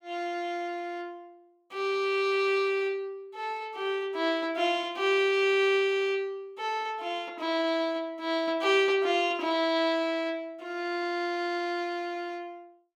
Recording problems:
none

